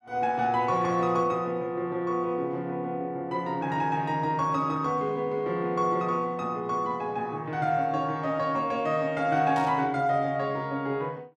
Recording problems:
static burst; at 9.5 s; peak -12 dB vs average level

